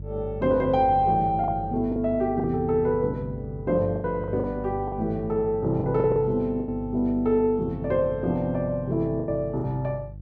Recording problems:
electrical hum; 50 Hz, harmonics up to 350 Hz, SNR 13 dB
packet loss; 6% of the sound replaced, filled with the last packet

